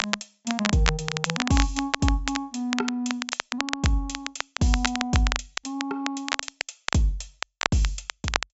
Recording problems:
treble missing; nothing above 8 kHz
crackle; vinyl, SNR 3 dB

